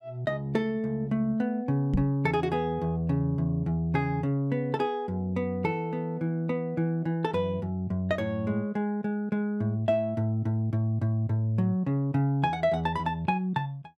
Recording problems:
microphone thump; at 2 s; peak +4 dB vs average level

